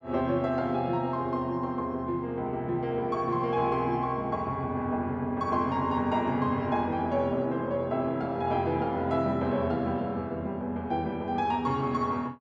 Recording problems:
none

